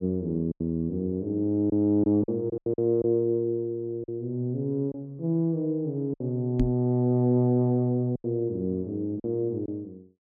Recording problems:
packet loss; 6% of the sound replaced, filled with silence
microphone thump; at 6.5 s; peak +3 dB vs average level

